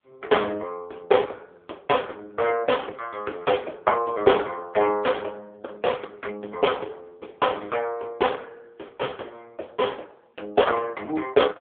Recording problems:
telephone audio; 320 Hz to 3.5 kHz, AMR-NB

